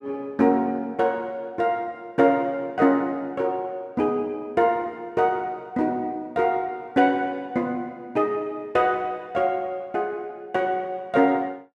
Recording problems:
none

